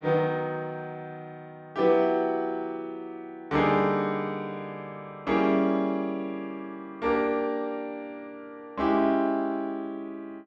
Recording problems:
none

